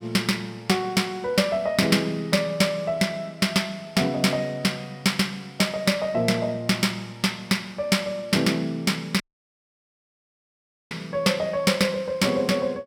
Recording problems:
audio cutting out; at 9 s for 1.5 s

